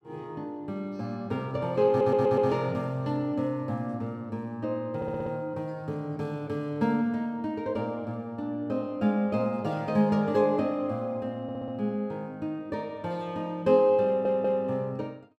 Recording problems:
audio stuttering; 4 times, first at 2 s

